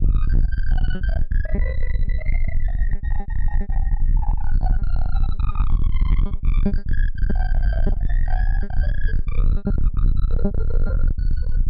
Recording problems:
treble missing; nothing above 5.5 kHz
distorted audio; soft clipping, signal-to-distortion ratio 6 dB
rumble; below 52 Hz, SNR -13 dB
lost packets; 12% of the sound replaced, filled with repeated pitch periods

